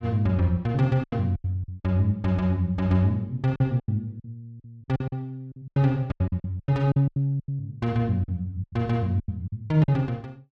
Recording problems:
lost packets; 13% of the sound replaced, filled with silence

